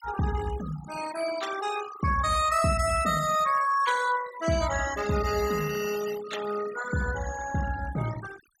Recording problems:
noise reduction artefacts; signal-to-artefact ratio 11 dB

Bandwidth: 17 kHz